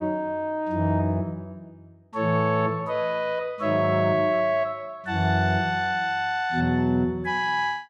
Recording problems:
none

